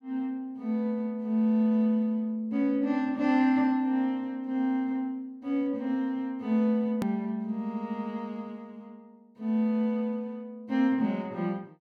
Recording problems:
hard cut with a click; at 7 s

